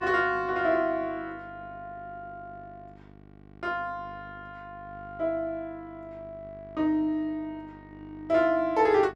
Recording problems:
hum; 50 Hz, harmonics up to 2 kHz, SNR 22 dB

